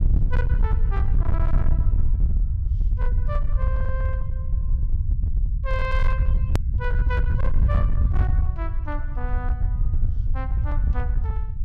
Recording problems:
distortion; hard clipping, uneven, signal-to-distortion ratio 10 dB
rumble; below 76 Hz, SNR -11 dB
edit click; at 6.5 s

